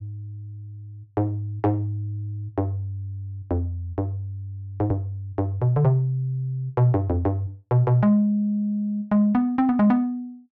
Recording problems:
none

